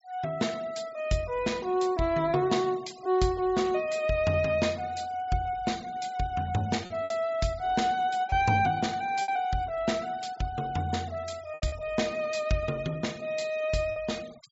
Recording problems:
treble missing; nothing above 8 kHz
denoising artefacts; signal-to-artefact ratio 22 dB
packet loss; 2% of the sound replaced, filled with repeated pitch periods

